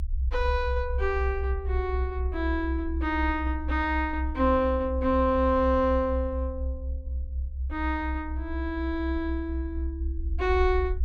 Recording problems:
rumble; below 68 Hz, strongest tone 66 Hz, SNR 4 dB

